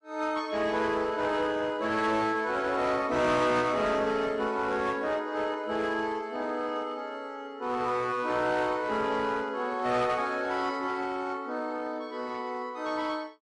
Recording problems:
lossy compression; MP3, log-spectral distance 2 dB, nothing above 11 kHz
distortion; hard clipping, uneven, signal-to-distortion ratio 11 dB

